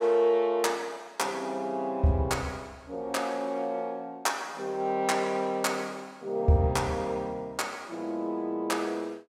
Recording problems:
none

